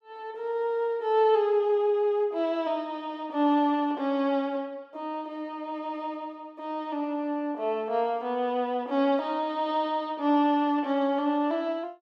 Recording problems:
none

